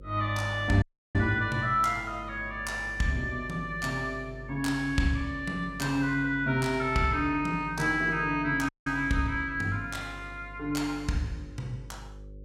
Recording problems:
mains hum; 50 Hz, harmonics up to 550 Hz, SNR 17 dB
audio cutting out; at 1 s and at 8.5 s

